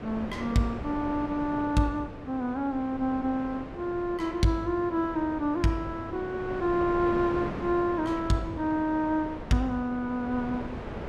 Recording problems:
wind noise; below 680 Hz, SNR 10 dB

